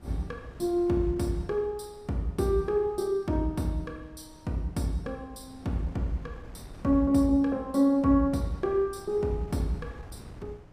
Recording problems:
wind noise; below 320 Hz, SNR 21 dB

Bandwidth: 15 kHz